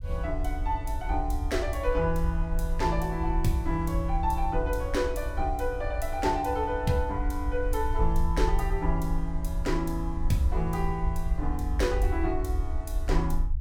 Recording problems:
rumble; below 62 Hz, SNR 2 dB

